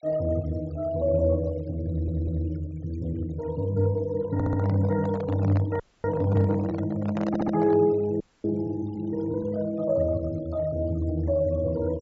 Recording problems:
low-pass filter; nothing above 8 kHz
noise reduction artefacts; signal-to-artefact ratio 24 dB
audio stuttering; at 2 s, at 4.5 s and at 7.5 s
microphone handling noise; from 4.5 to 8 s; peak -3 dB vs average level
frozen audio; at 6 s and at 8 s

